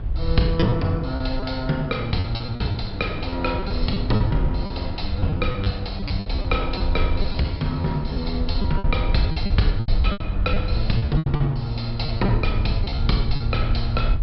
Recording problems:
low-pass filter; nothing above 5.3 kHz
hum; 50 Hz, harmonics up to 350 Hz, SNR 17 dB
rumble; below 80 Hz, SNR 3 dB
wind noise; below 500 Hz, SNR 15 dB
lost packets; 11% of the sound replaced, filled with repeated pitch periods

